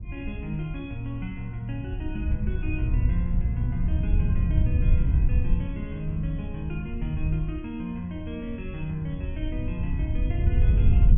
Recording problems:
wind on the microphone; below 90 Hz, SNR -6 dB

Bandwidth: 3.5 kHz